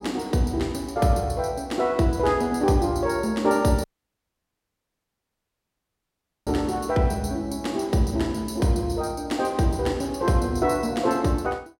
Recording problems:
dropout; at 4 s for 2.5 s

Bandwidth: 16.5 kHz